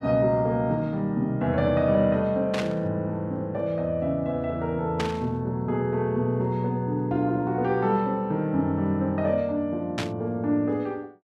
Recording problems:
static burst; at 2.5 s, at 5 s and at 10 s; peak -1 dB vs average level

